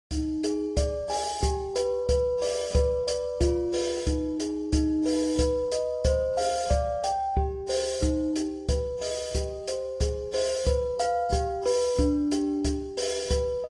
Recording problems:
lossy compression; AAC, log-spectral distance 2 dB

